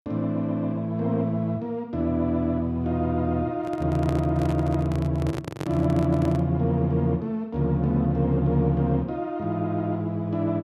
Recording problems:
handling noise; from 3.5 to 6.5 s; peak -2 dB vs average level

